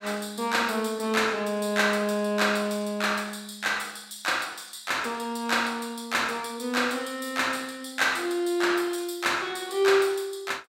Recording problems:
none

